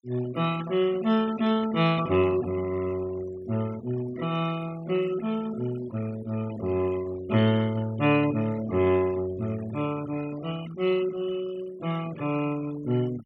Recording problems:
noise reduction artefacts; signal-to-artefact ratio 17 dB

